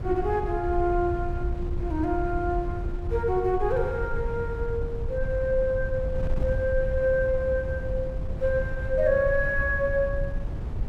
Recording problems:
wind noise; below 92 Hz, SNR 5 dB

